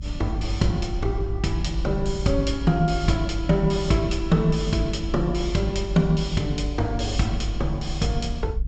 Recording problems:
treble missing; nothing above 8 kHz
rumble; below 54 Hz, strongest tone 52 Hz, SNR 6 dB

